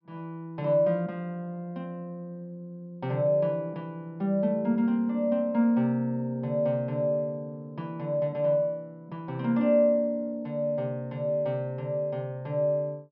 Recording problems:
low-pass filter; nothing above 5.5 kHz

